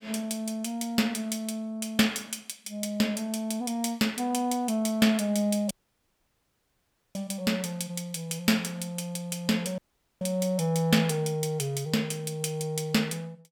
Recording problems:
audio cutting out; at 5.5 s for 1.5 s and at 10 s

